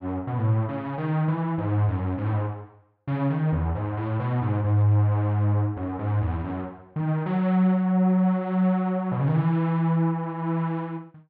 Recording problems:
none

